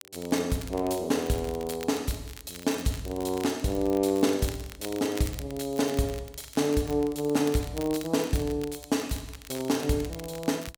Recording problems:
crackling; vinyl, SNR 16 dB

